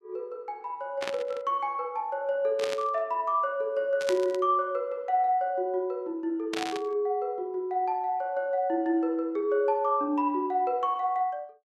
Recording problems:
burst of static; 4 times, first at 1 s; peak -1 dB vs average level

